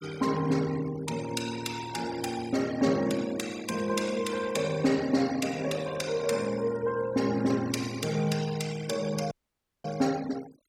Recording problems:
denoising artefacts; signal-to-artefact ratio 15 dB
audio cutting out; at 9.5 s for 0.5 s

